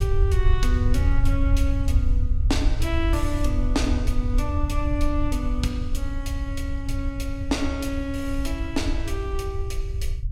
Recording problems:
rumble; below 76 Hz, SNR -3 dB

